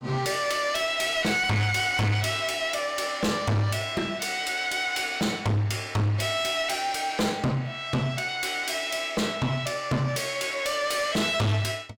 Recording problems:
distorted audio; soft clipping, signal-to-distortion ratio 7 dB

